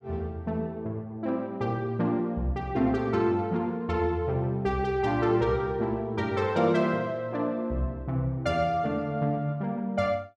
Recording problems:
none

